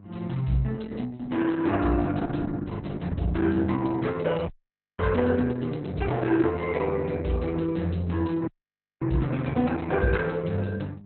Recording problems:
lossy codec; Opus, log-spectral distance 4 dB, nothing above 4.1 kHz
hum; 50 Hz, harmonics up to 800 Hz, SNR 22 dB
audio freezing; at 4.5 s for 0.5 s and at 8.5 s for 0.5 s

